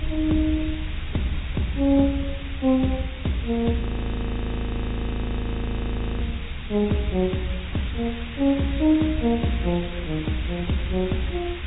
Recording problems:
treble missing; nothing above 3.8 kHz
lossy compression; AAC, log-spectral distance 8 dB
background hiss; SNR 13 dB
low-frequency rumble; below 76 Hz, SNR 11 dB
frozen audio; at 4 s for 2.5 s

